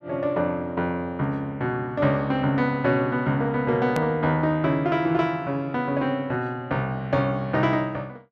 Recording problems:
hard cut with a click; at 4 s

